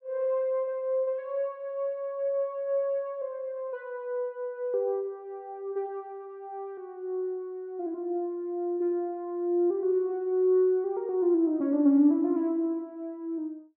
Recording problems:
none

